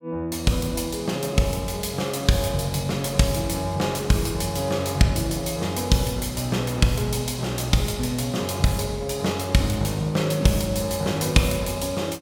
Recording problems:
none

